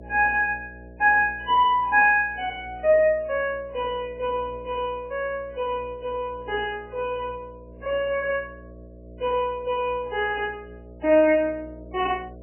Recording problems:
codec artefacts; MP3, log-spectral distance 2 dB, nothing above 2.5 kHz
hum; 60 Hz, harmonics up to 660 Hz, SNR 21 dB

